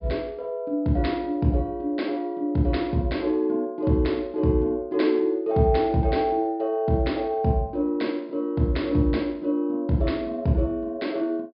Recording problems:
low-pass filter; nothing above 5.1 kHz

